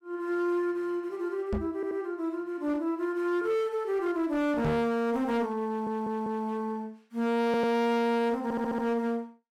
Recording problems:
distortion; hard clipping, signal-to-distortion ratio 7 dB
microphone thump; at 1.5 s and at 4.5 s; peak +4 dB vs average level
audio stuttering; 4 times, first at 2 s

